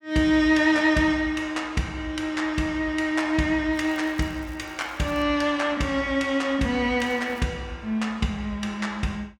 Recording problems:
crackle; from 3.5 to 5 s and at 7 s; loose cable, SNR 28 dB

